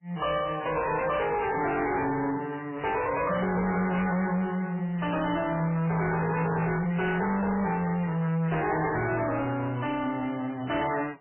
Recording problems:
lossy compression; MP3, log-spectral distance 5 dB, nothing above 2.8 kHz
distortion; soft clipping, signal-to-distortion ratio 7 dB

